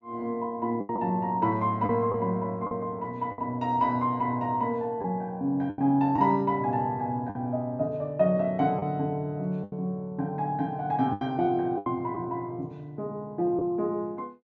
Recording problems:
treble cut off; nothing above 8 kHz
lost packets; 5% of the sound replaced, filled with the last packet

